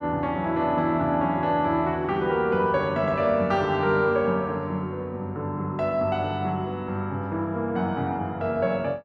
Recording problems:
none

